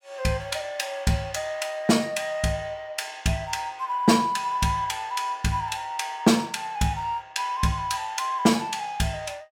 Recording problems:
none

